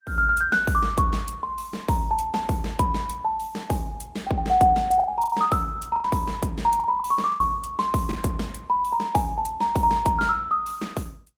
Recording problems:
codec artefacts; Opus, log-spectral distance 2 dB, nothing above 19 kHz
packet loss; 4% of the sound replaced, filled with the last packet

